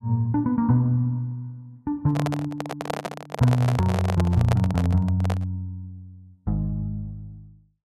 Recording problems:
microphone handling noise; from 2 to 5.5 s; peak 0 dB vs average level

